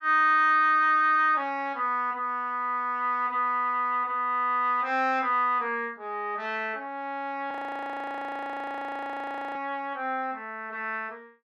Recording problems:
audio freezing; at 7.5 s for 2 s

